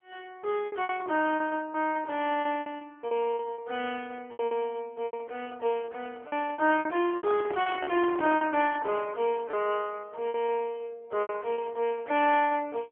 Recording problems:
telephone audio; 260 Hz to 3.3 kHz, AMR-NB
lost packets; 11% of the sound replaced, filled with repeated pitch periods
microphone handling noise; from 7 to 8.5 s; peak -2 dB vs average level

